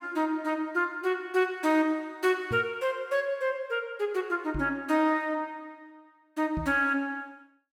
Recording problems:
microphone thump; at 2.5 s, at 4.5 s and at 6.5 s; peak -3 dB vs average level

